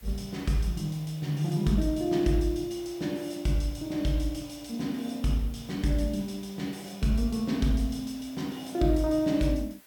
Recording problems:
hiss; slope -1 dB per octave, SNR 24 dB

